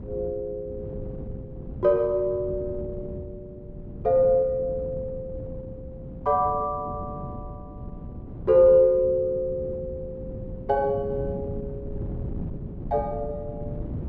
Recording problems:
wind on the microphone; below 220 Hz, SNR 13 dB

